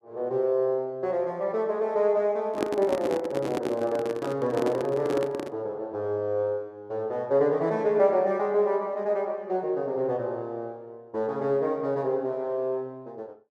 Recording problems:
handling noise; from 2.5 to 5.5 s; peak +3 dB vs average level

